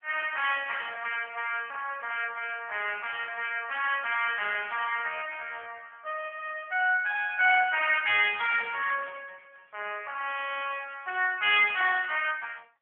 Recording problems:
phone line; 320 Hz to 3.3 kHz, AMR-NB

